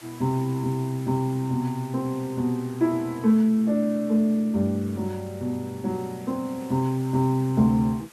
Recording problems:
background hiss; slope -1 dB per octave, SNR 23 dB

